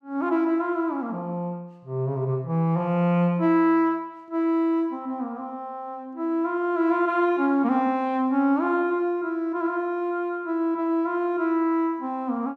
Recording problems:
none

